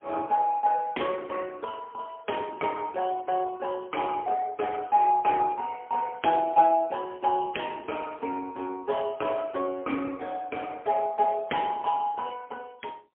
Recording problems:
phone line; 220 Hz to 3.3 kHz, AMR-NB, then MP3

